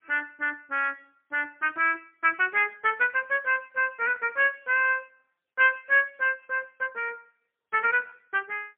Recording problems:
phone line; 340 Hz to 3.2 kHz, AMR-NB, then MP3

